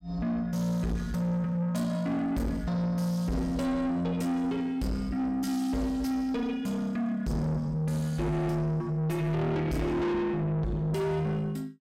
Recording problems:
distorted audio; soft clipping, signal-to-distortion ratio 8 dB

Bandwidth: 16 kHz